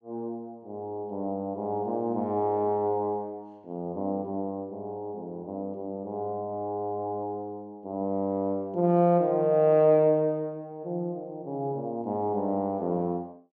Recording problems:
none

